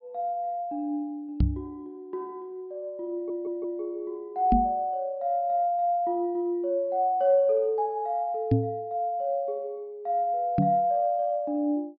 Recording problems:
low-pass filter; nothing above 5.5 kHz
microphone bump; 4 times, first at 1.5 s; peak +8 dB vs average level
stutter; at 3 s

